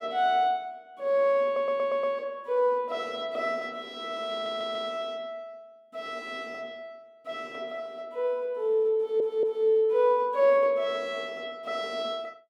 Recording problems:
audio stuttering; at 1.5 s, at 4.5 s and at 9 s

